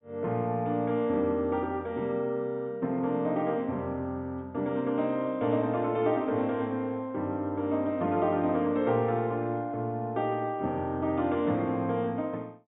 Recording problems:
treble cut off; nothing above 4 kHz

